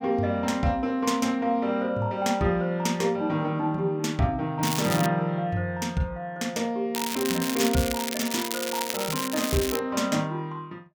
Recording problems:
crackle; at 4.5 s and from 7 to 10 s; loose cable, SNR 5 dB

